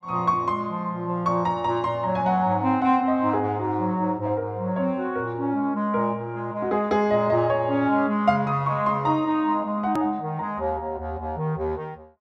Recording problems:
edit click; at 10 s

